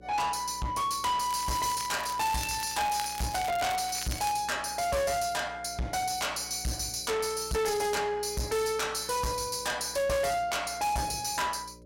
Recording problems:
distorted audio; soft clipping, signal-to-distortion ratio 7 dB
hum; 60 Hz, harmonics up to 600 Hz, SNR 23 dB
crackle; from 1.5 to 4.5 s; loose cable, SNR 12 dB

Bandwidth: 16.5 kHz